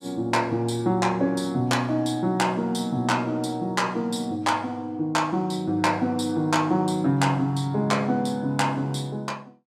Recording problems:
none

